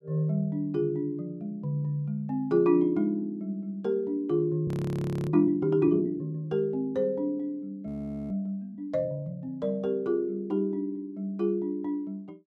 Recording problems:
audio freezing; at 4.5 s for 0.5 s and at 8 s

